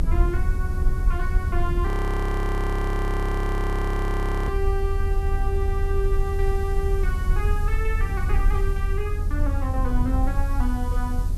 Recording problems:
hiss; SNR 19 dB
rumble; below 78 Hz, SNR -5 dB
frozen audio; at 2 s for 2.5 s

